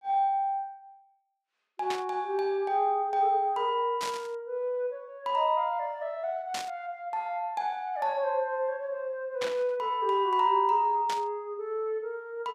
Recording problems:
burst of static; 5 times, first at 2 s; peak -2 dB vs average level

